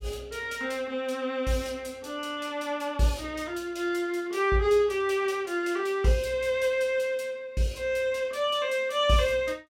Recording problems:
none

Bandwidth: 16.5 kHz